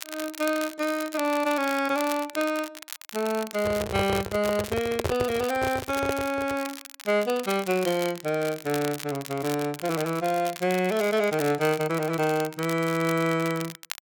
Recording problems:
crackle; vinyl, SNR 13 dB
microphone handling noise; from 3.5 to 6.5 s; peak +3 dB vs average level

